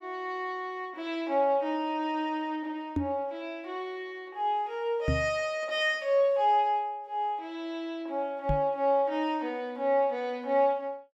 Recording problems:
microphone thump; at 3 s, at 5 s and at 8.5 s; peak +3 dB vs average level

